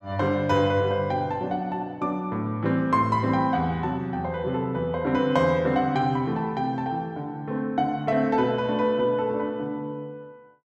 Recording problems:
none

